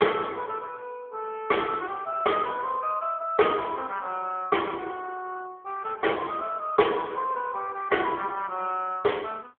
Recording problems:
phone line; 240 Hz to 3.4 kHz, AMR-NB

